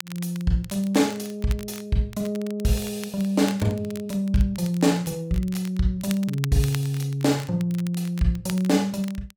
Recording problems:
crackle; vinyl, SNR 18 dB

